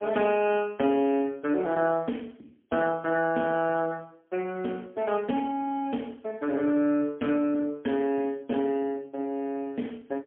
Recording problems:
telephone audio; 190 Hz to 3.3 kHz, AMR-NB, then MP3

